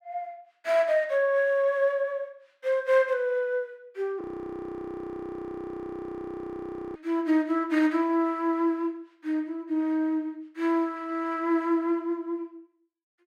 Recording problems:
frozen audio; at 4 s for 2.5 s

